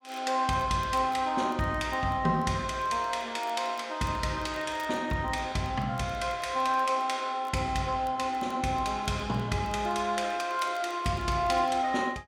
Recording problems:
crackle; vinyl, SNR 30 dB

